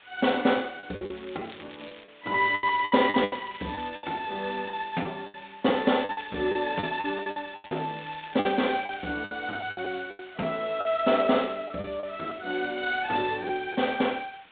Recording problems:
phone line; 190 Hz to 3.8 kHz, G.726
hiss; SNR 24 dB
lost packets; 11% of the sound replaced, filled with the last packet
crackle; 4 times, first at 1 s; loose cable, SNR 21 dB

